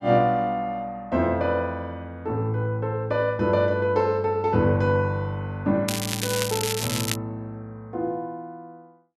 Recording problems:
crackle; from 6 to 7 s; loose cable, SNR 4 dB

